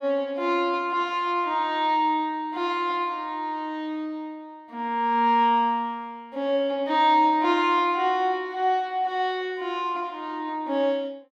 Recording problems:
none

